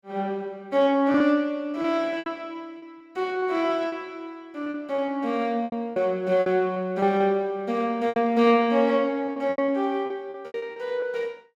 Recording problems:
lost packets; 10% of the sound replaced, filled with repeated pitch periods

